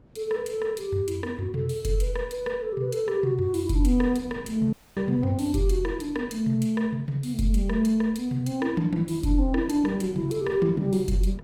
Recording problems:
wind noise; below 330 Hz, SNR 21 dB
audio cutting out; at 4.5 s

